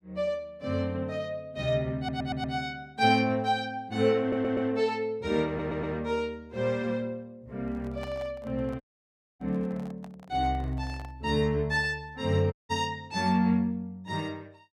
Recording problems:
stutter; at 2 s, at 4 s and at 5.5 s
handling noise; from 7.5 to 11 s; peak -10 dB vs average level
dropout; at 9 s for 0.5 s and at 13 s

